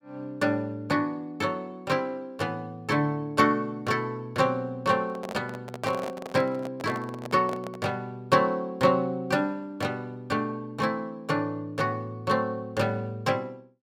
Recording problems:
handling noise; from 5 to 8 s; peak -3 dB vs average level

